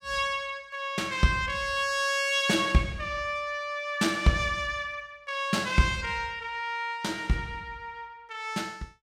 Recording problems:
none

